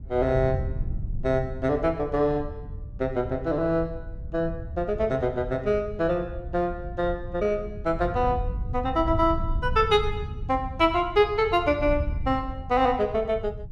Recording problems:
wind on the microphone; below 100 Hz, SNR 9 dB

